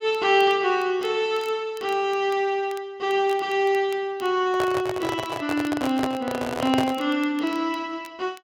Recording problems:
crackling; vinyl, SNR 25 dB
handling noise; from 4.5 to 7 s; peak +2 dB vs average level

